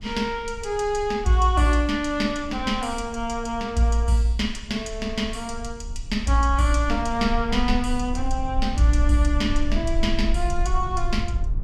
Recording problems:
rumble; below 54 Hz, strongest tone 18 Hz, SNR 8 dB

